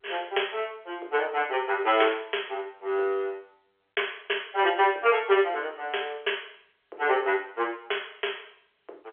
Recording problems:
phone line; 340 Hz to 3.4 kHz, G.711

